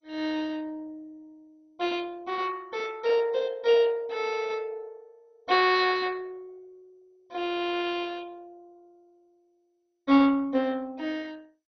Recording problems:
codec artefacts; MP2, log-spectral distance 3 dB

